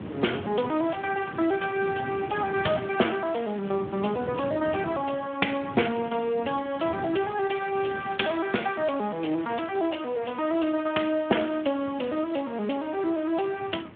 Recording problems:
telephone audio; 170 Hz to 3.4 kHz, Speex
hiss; SNR 23 dB
wind on the microphone; below 390 Hz, SNR 13 dB
crackle; from 1 to 4 s and from 7 to 10 s; loose cable, SNR 24 dB

